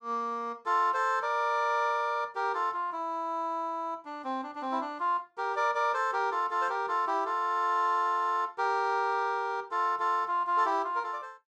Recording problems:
none

